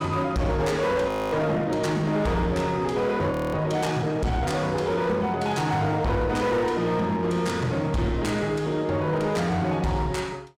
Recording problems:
distorted audio; hard clipping, uneven, signal-to-distortion ratio 10 dB
frozen audio; at 1 s and at 3.5 s

